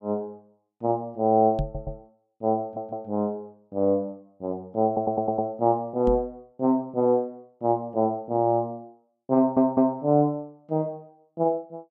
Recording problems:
microphone bump; at 1.5 s and at 6 s; peak 0 dB vs average level
audio stuttering; 4 times, first at 1.5 s

